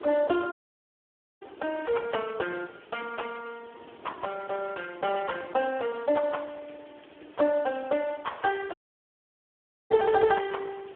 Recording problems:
phone line; 260 Hz to 3.5 kHz, Speex
background hiss; SNR 27 dB
wind noise; below 540 Hz, SNR 21 dB
dropout; at 0.5 s for 1 s and at 8.5 s for 1 s

